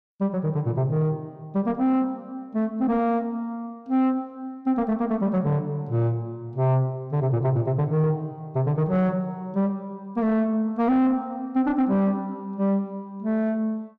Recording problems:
distorted audio; soft clipping, signal-to-distortion ratio 10 dB

